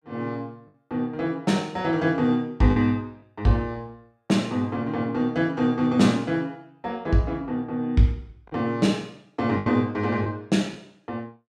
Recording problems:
lost packets; 2% of the sound replaced, filled with the last packet

